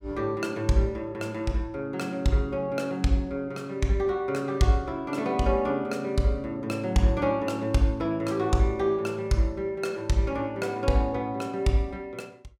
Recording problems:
none

